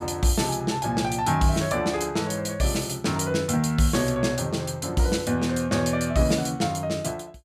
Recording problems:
none

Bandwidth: 15.5 kHz